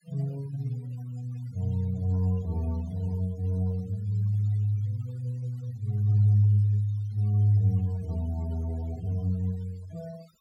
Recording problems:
noise reduction artefacts; signal-to-artefact ratio 26 dB

